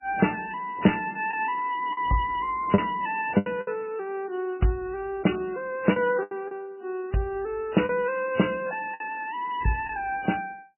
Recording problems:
lossy compression; MP3, log-spectral distance 4 dB, nothing above 2.9 kHz
packet loss; 5% of the sound replaced, filled with the last packet

